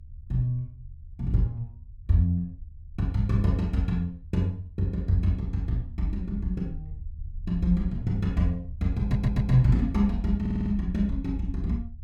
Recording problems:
rumble; below 78 Hz, SNR 15 dB
audio stuttering; at 9 s and at 10 s

